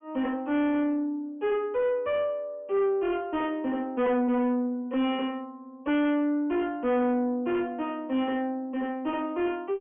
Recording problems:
low-pass filter; nothing above 3.3 kHz
distortion; soft clipping, signal-to-distortion ratio 8 dB

